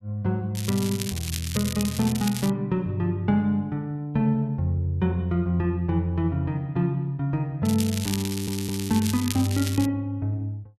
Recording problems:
crackling; from 0.5 to 2.5 s and from 7.5 to 10 s; loose cable, SNR 8 dB
audio stuttering; at 8.5 s

